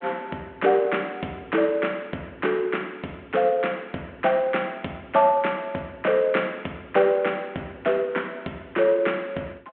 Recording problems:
telephone audio; 280 Hz to 3.3 kHz, G.726

